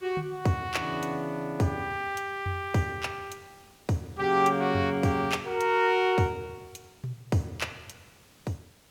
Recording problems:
background hiss; slope -3 dB per octave, SNR 28 dB

